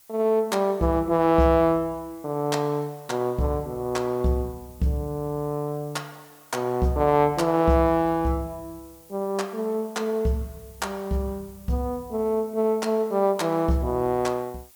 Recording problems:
background hiss; slope +1 dB per octave, SNR 26 dB

